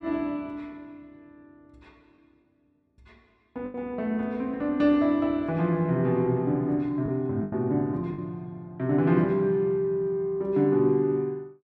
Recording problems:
lost packets; 2% of the sound replaced, filled with the last packet

